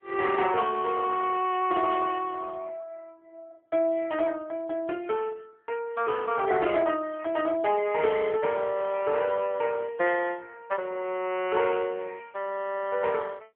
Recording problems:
telephone audio; 260 Hz to 3.3 kHz, AMR-NB

